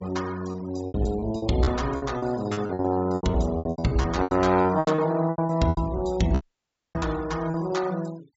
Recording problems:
treble missing; nothing above 8 kHz
denoising artefacts; signal-to-artefact ratio 20 dB
lost packets; 18% of the sound replaced, filled with repeated pitch periods
dropout; at 6.5 s for 0.5 s

